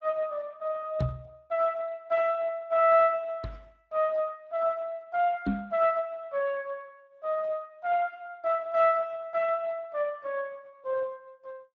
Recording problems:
lossy codec; Speex, log-spectral distance 2 dB
microphone bump; at 1 s, at 3.5 s and at 5.5 s; peak +6 dB vs average level

